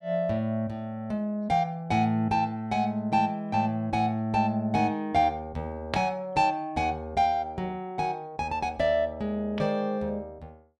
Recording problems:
none

